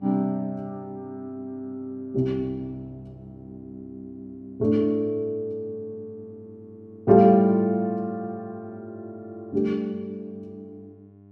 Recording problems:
electrical hum; 50 Hz, harmonics up to 700 Hz, SNR 26 dB

